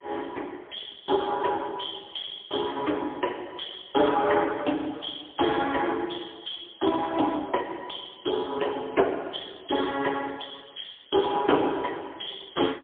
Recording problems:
telephone audio; 260 Hz to 3.5 kHz, AMR-NB, then MP3

